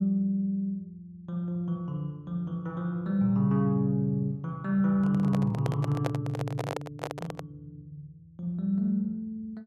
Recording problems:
handling noise; from 5 to 7.5 s; peak +1 dB vs average level

